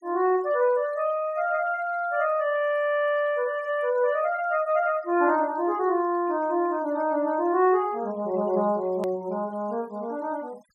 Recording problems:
noise reduction artefacts; signal-to-artefact ratio 27 dB
hard cut with a click; at 9 s

